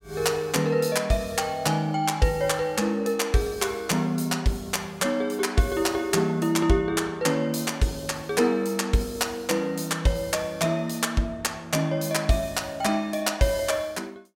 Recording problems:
none

